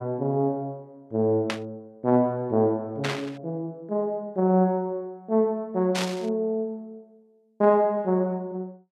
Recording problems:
static burst; at 1.5 s, at 3 s and at 6 s; peak 0 dB vs average level

